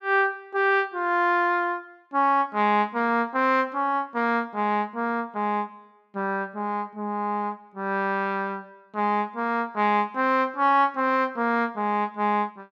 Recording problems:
none

